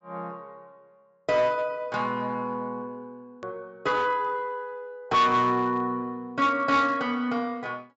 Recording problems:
treble missing; nothing above 8 kHz
distorted audio; hard clipping, uneven, signal-to-distortion ratio 10 dB
edit click; at 3.5 s

